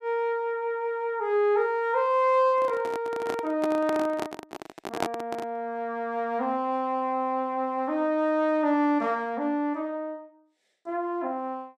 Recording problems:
microphone handling noise; from 2.5 to 5.5 s; peak +3 dB vs average level

